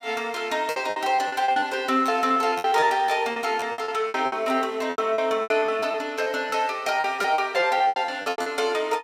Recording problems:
packet loss; 17% of the sound replaced, filled with repeated pitch periods

